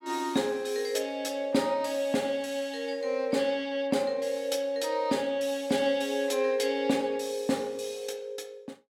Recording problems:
none

